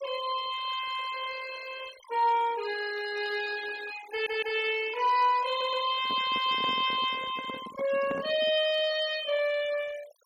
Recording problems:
noise reduction artefacts; signal-to-artefact ratio 16 dB
audio stuttering; at 4 s and at 5.5 s
microphone handling noise; from 6 to 8.5 s; peak -4 dB vs average level

